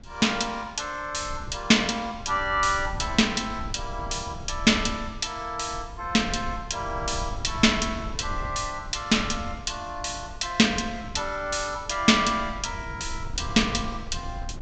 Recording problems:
low-pass filter; nothing above 8 kHz
wind on the microphone; below 110 Hz, SNR 14 dB

